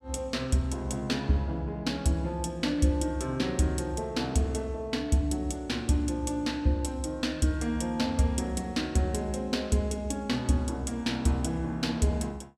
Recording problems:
none

